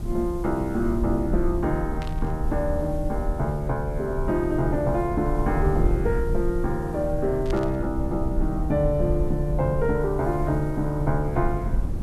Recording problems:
hiss; SNR 27 dB
rumble; below 74 Hz, SNR 5 dB
static burst; at 2 s and at 7.5 s; peak -9 dB vs average level

